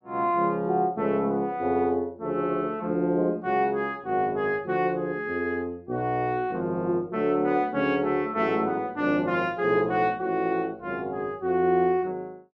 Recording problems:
none

